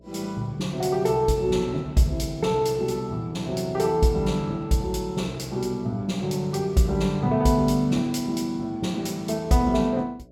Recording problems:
electrical hum; 60 Hz, harmonics up to 660 Hz, SNR 26 dB

